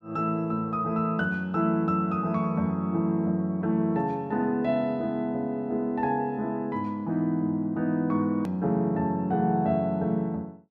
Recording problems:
edit click; at 8.5 s

